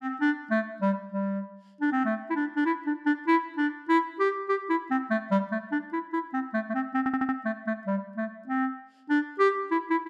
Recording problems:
stutter; at 7 s

